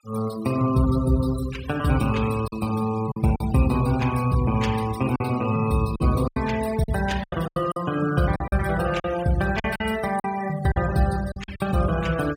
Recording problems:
noise reduction artefacts; signal-to-artefact ratio 17 dB
lost packets; 7% of the sound replaced, filled with silence

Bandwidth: 16 kHz